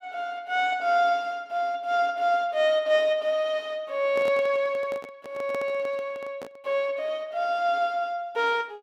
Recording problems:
microphone handling noise; from 4 to 6.5 s; peak -6 dB vs average level

